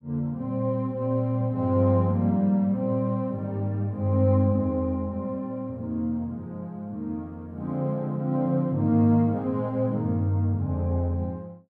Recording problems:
none

